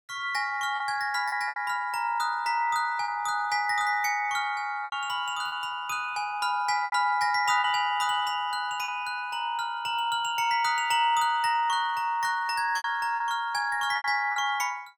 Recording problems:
lost packets; 5% of the sound replaced, filled with repeated pitch periods

